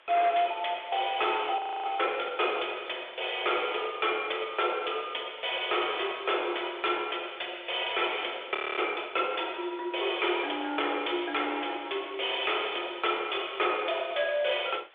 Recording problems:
telephone audio; 320 Hz to 3.5 kHz, G.726
distorted audio; hard clipping, uneven, signal-to-distortion ratio 10 dB
hiss; SNR 26 dB
audio freezing; at 1.5 s and at 8.5 s

